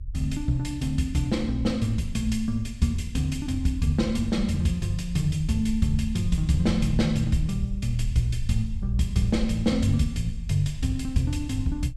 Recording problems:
low-frequency rumble; below 66 Hz, SNR 10 dB

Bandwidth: 13.5 kHz